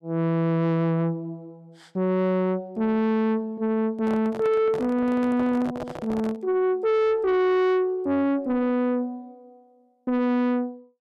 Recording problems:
distortion; soft clipping, signal-to-distortion ratio 7 dB
handling noise; from 4 to 6.5 s; peak -6 dB vs average level

